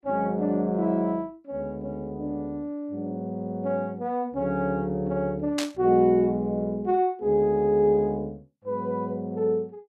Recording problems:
static burst; at 5.5 s; peak 0 dB vs average level

